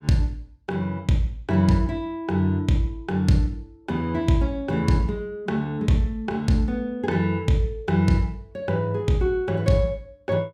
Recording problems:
none

